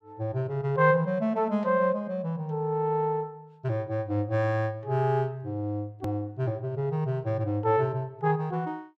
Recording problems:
click at an edit; at 6 s

